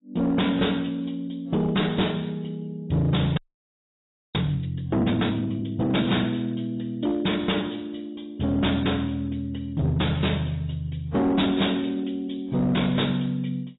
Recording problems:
lossy compression; AAC, log-spectral distance 5 dB, nothing above 3.8 kHz
distorted audio; hard clipping, uneven, signal-to-distortion ratio 10 dB
frozen audio; at 3.5 s for 1 s

